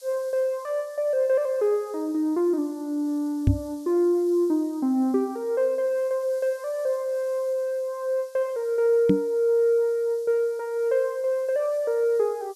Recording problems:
background hiss; SNR 27 dB
microphone bump; at 3.5 s and at 9 s; peak +8 dB vs average level

